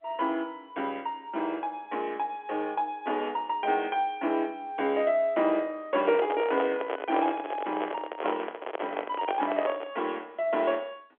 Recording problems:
phone line; 240 Hz to 3.4 kHz, G.711
microphone handling noise; from 6 to 10 s; peak +2 dB vs average level

